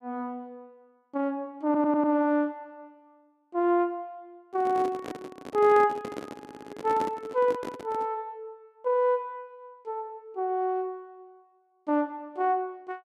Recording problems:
audio stuttering; at 1.5 s and at 6.5 s
microphone handling noise; from 4.5 to 8 s; peak -3 dB vs average level

